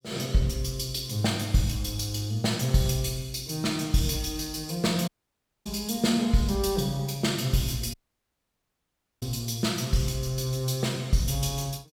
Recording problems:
dropout; at 5 s for 0.5 s and at 8 s for 1.5 s

